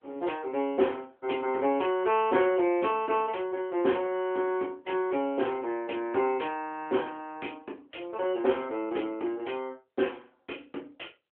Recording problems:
telephone audio; 280 Hz to 3.3 kHz, AMR-NB

